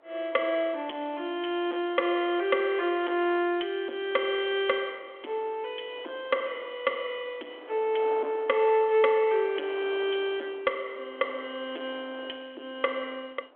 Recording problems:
phone line; 280 Hz to 3.4 kHz, G.726
distortion; soft clipping, signal-to-distortion ratio 9 dB
wind on the microphone; below 1 kHz, SNR 21 dB

